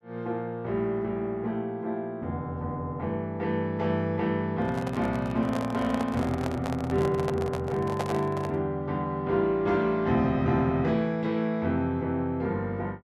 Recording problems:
microphone handling noise; from 4.5 to 8.5 s; peak 0 dB vs average level

